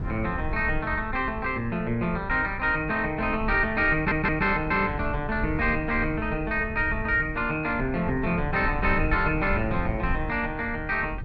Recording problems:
rumble; below 98 Hz, SNR 10 dB
audio stuttering; at 4 s

